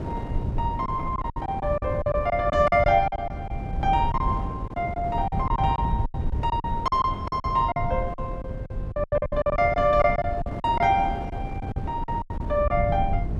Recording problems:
rumble; below 120 Hz, SNR 7 dB
wind on the microphone; below 430 Hz, SNR 13 dB
lost packets; 14% of the sound replaced, filled with silence

